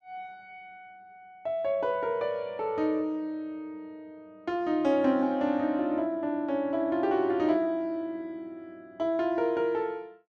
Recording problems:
none

